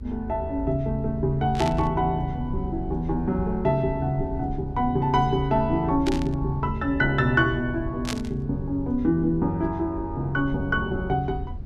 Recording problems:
rumble; below 80 Hz, SNR 10 dB
static burst; at 1.5 s, at 6 s and at 8 s; peak -1 dB vs average level

